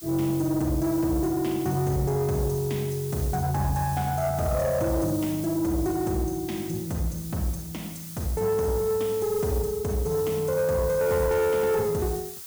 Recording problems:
distortion; soft clipping, signal-to-distortion ratio 11 dB
hiss; SNR 13 dB

